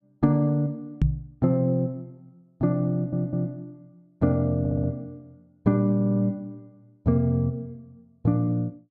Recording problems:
knock on the microphone; at 1 s; peak +6 dB vs average level
stutter; at 3 s, at 4.5 s and at 6 s

